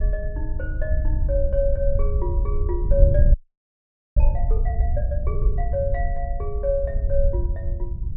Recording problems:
wind on the microphone; below 66 Hz, SNR -5 dB
frozen audio; at 3.5 s for 1 s

